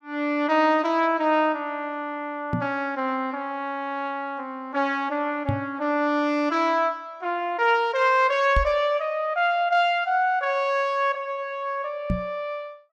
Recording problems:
knock on the microphone; 4 times, first at 2.5 s; peak +3 dB vs average level

